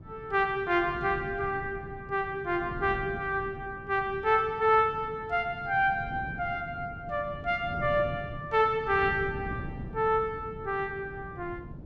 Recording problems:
wind noise; below 230 Hz, SNR 13 dB

